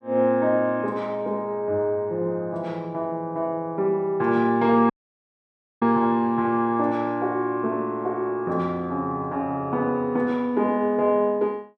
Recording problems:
audio cutting out; at 5 s for 1 s

